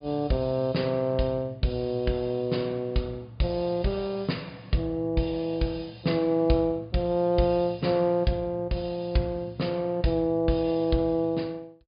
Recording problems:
treble missing; nothing above 4.9 kHz

